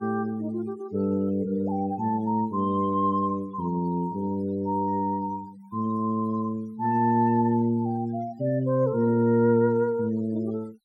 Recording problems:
denoising artefacts; signal-to-artefact ratio 27 dB

